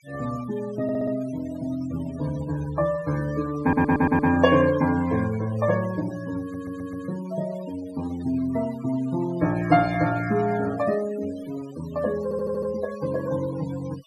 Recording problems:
noise reduction artefacts; signal-to-artefact ratio 17 dB
stutter; 4 times, first at 1 s

